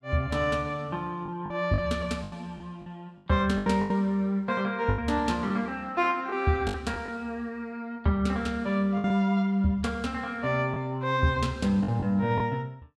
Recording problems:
packet loss; 6% of the sound replaced, filled with the last packet

